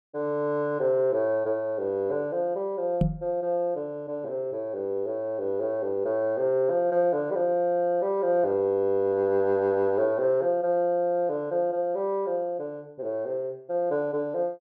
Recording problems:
knock on the microphone; at 3 s; peak +6 dB vs average level

